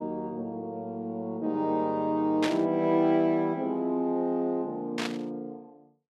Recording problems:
burst of static; at 2.5 s and at 5 s; peak 0 dB vs average level

